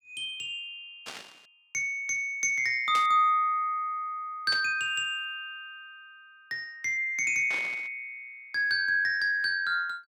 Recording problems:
burst of static; 4 times, first at 1 s; peak -6 dB vs average level

